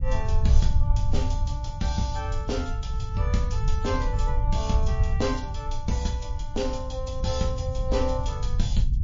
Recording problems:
codec artefacts; MP3, log-spectral distance 2 dB, nothing above 6.5 kHz
low-frequency rumble; below 82 Hz, SNR -2 dB

